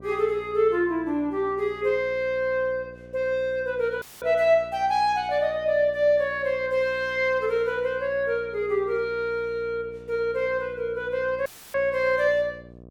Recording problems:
hum; 60 Hz, harmonics up to 1.1 kHz, SNR 22 dB
audio cutting out; at 4 s and at 11 s

